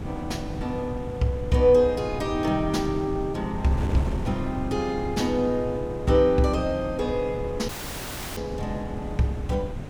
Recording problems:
wind on the microphone; below 230 Hz, SNR 9 dB
dropout; at 7.5 s for 0.5 s

